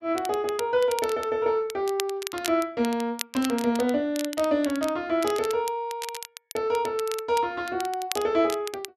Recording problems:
crackle; vinyl, SNR 12 dB

